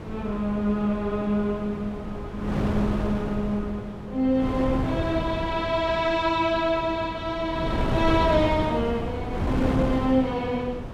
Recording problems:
wind noise; below 430 Hz, SNR 5 dB

